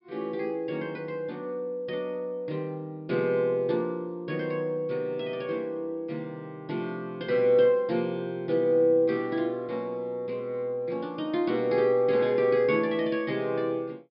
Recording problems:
treble missing; nothing above 5.5 kHz

